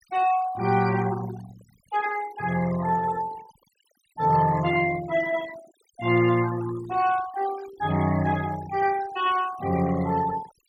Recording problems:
noise reduction artefacts; signal-to-artefact ratio 16 dB

